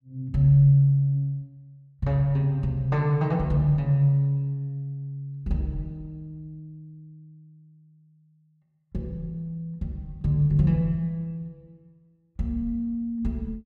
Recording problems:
none

